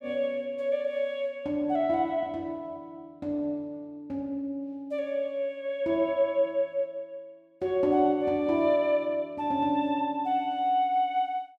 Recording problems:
none

